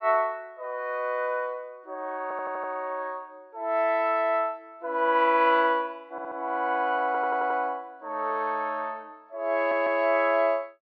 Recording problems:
audio stuttering; 4 times, first at 2 s

